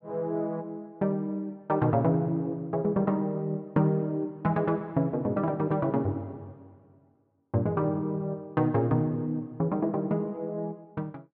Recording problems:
none

